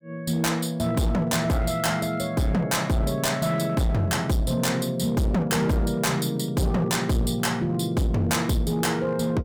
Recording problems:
distorted audio; hard clipping, signal-to-distortion ratio 7 dB

